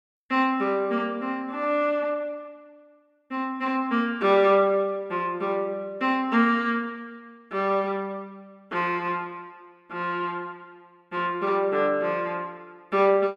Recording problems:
none

